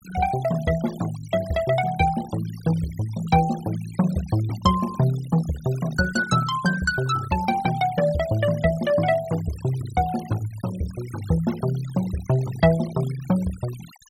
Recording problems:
noise reduction artefacts; signal-to-artefact ratio 18 dB

